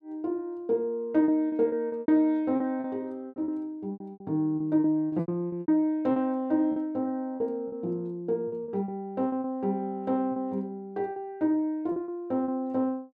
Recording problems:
lost packets; 11% of the sound replaced, filled with repeated pitch periods

